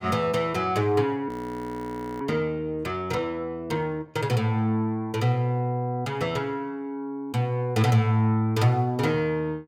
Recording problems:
audio freezing; at 1.5 s for 1 s

